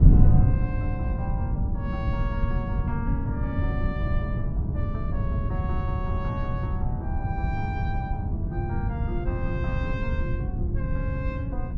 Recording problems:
wind on the microphone; below 130 Hz, SNR -8 dB

